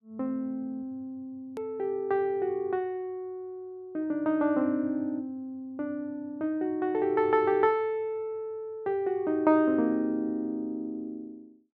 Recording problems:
edit click; at 1.5 s

